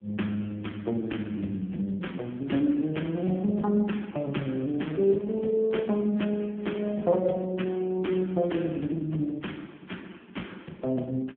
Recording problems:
telephone audio; 130 Hz to 3.4 kHz, AMR-NB

